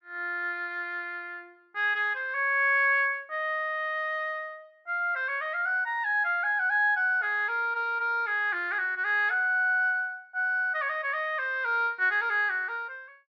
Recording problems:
none

